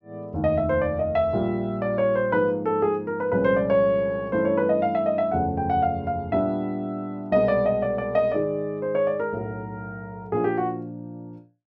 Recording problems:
none

